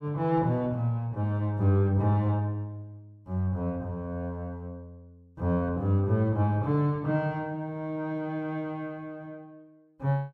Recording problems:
none

